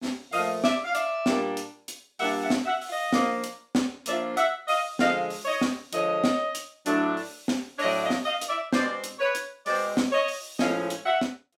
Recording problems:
none

